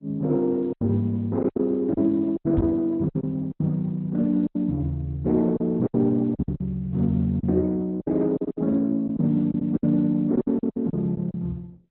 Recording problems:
codec artefacts; Opus, log-spectral distance 2 dB, nothing above 4 kHz
packet loss; 11% of the sound replaced, filled with silence
microphone bump; at 2.5 s; peak +3 dB vs average level

